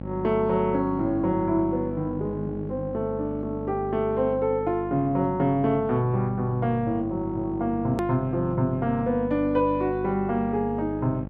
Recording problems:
hum; 50 Hz, harmonics up to 1.1 kHz, SNR 10 dB
edit click; at 8 s

